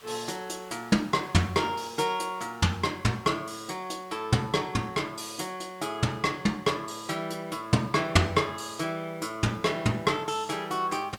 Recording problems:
hiss; SNR 25 dB

